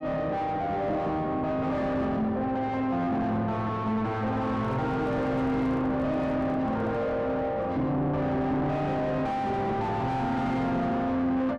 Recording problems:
distorted audio; soft clipping, signal-to-distortion ratio 5 dB
microphone handling noise; from 4.5 to 7 s; peak -2 dB vs average level

